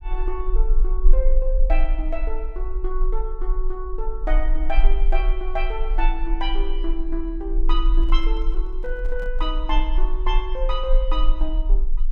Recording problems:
low-frequency rumble; below 36 Hz, strongest tone 20 Hz, SNR -5 dB
handling noise; from 8 to 9.5 s; peak -9 dB vs average level

